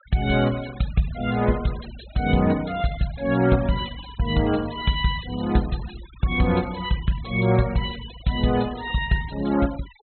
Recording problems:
low-pass filter; nothing above 4.1 kHz
noise reduction artefacts; signal-to-artefact ratio 18 dB

